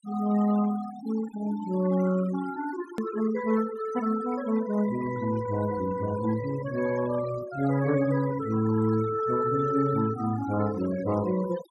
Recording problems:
denoising artefacts; signal-to-artefact ratio 15 dB
edit click; at 3 s

